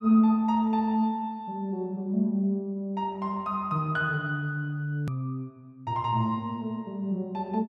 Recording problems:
edit click; at 5 s

